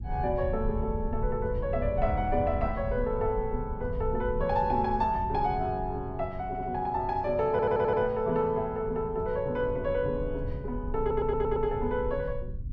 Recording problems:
rumble; below 96 Hz, SNR 8 dB
stutter; at 6.5 s, at 7.5 s and at 11 s

